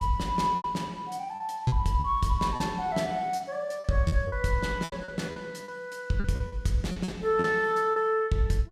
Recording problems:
lost packets; 10% of the sound replaced, filled with repeated pitch periods

